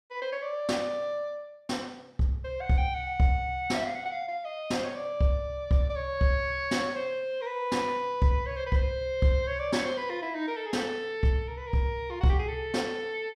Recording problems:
none

